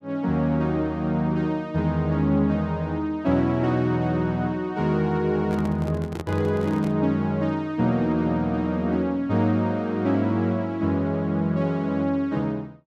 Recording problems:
microphone handling noise; from 5.5 to 7 s; peak -5 dB vs average level

